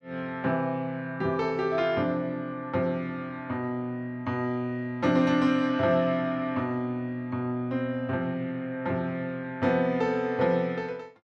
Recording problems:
none

